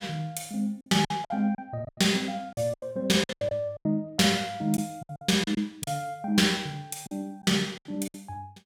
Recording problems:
lost packets; 12% of the sound replaced, filled with silence

